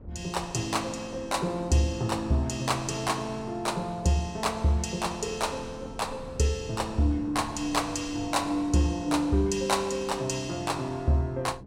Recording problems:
wind noise; below 280 Hz, SNR 18 dB

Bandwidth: 16.5 kHz